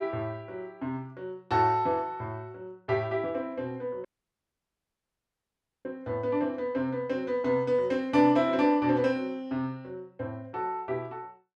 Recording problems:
audio cutting out; at 4 s for 2 s

